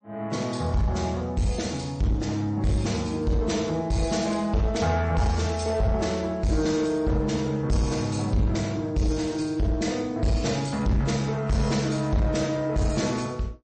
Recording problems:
lossy compression; MP3, log-spectral distance 3 dB, nothing above 8.2 kHz
distortion; soft clipping, signal-to-distortion ratio 11 dB

